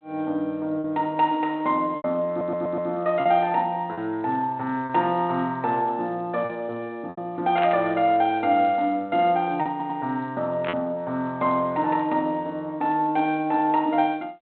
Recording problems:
telephone audio; 280 Hz to 3.8 kHz, G.726
lost packets; 3% of the sound replaced, filled with repeated pitch periods
audio stuttering; at 2.5 s and at 9.5 s
burst of static; at 7.5 s and at 11 s; peak -2 dB vs average level

